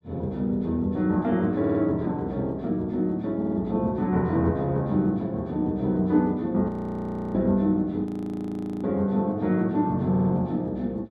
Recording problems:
audio stuttering; at 1.5 s, at 3.5 s and at 10 s
frozen audio; at 6.5 s for 0.5 s and at 8 s for 1 s

